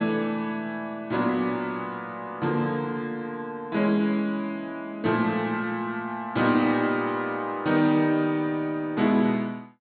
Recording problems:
treble cut off; nothing above 4.4 kHz

